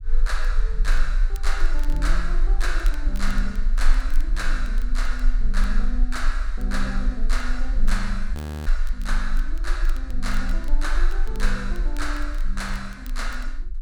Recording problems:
rumble; below 34 Hz, strongest tone 20 Hz, SNR -5 dB
crackle; vinyl, SNR 19 dB
audio freezing; at 8.5 s

